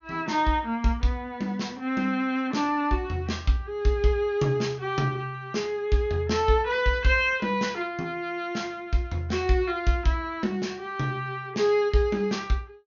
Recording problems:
low-pass filter; nothing above 6.7 kHz

